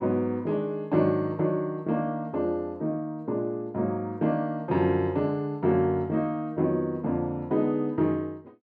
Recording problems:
none

